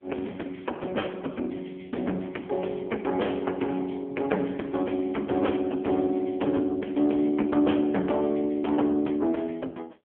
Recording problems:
phone line; 190 Hz to 3.3 kHz, AMR-NB
distorted audio; hard clipping, signal-to-distortion ratio 12 dB

